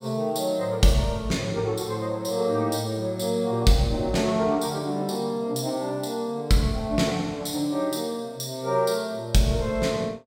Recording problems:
none

